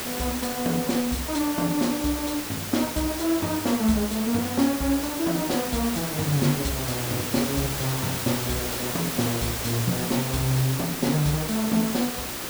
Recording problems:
hiss; slope -2 dB per octave, SNR 3 dB

